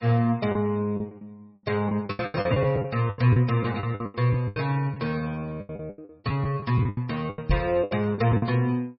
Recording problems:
lossy compression; MP3, log-spectral distance 2 dB, nothing above 4.6 kHz
lost packets; 17% of the sound replaced, filled with the last packet
microphone bump; at 7.5 s; peak +4 dB vs average level

